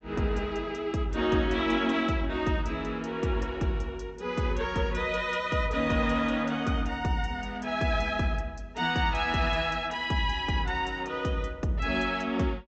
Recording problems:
treble missing; nothing above 8 kHz

